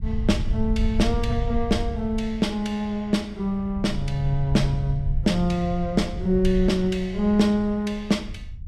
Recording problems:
rumble; below 86 Hz, SNR 7 dB

